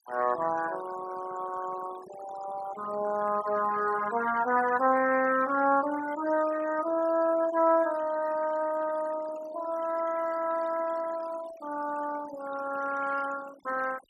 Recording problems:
denoising artefacts; signal-to-artefact ratio 14 dB

